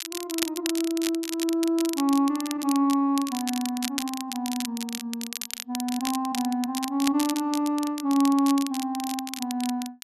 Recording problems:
crackling; vinyl, SNR 8 dB

